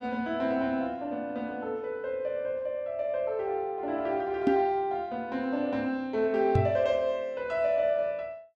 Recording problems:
microphone thump; at 4.5 s and at 6.5 s; peak +7 dB vs average level

